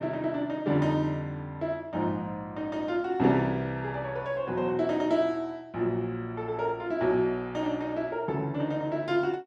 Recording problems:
none

